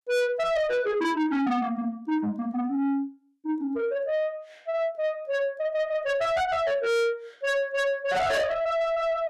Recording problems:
distorted audio; soft clipping, signal-to-distortion ratio 6 dB

